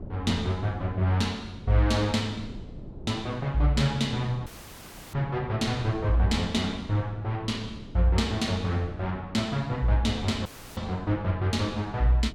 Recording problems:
wind noise; below 270 Hz, SNR 15 dB
dropout; at 4.5 s for 0.5 s and at 10 s

